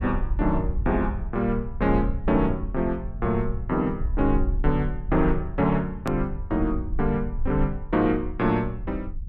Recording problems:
low-frequency rumble; below 62 Hz, SNR 6 dB
edit click; at 6 s

